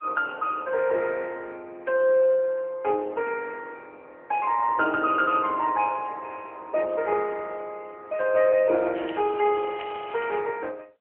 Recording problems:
telephone audio; 280 Hz to 3.4 kHz, AMR-NB
crackling; from 9 to 10 s; loose cable, SNR 17 dB

